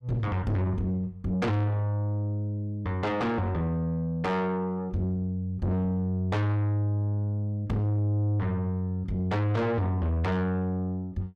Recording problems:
distortion; soft clipping, signal-to-distortion ratio 6 dB

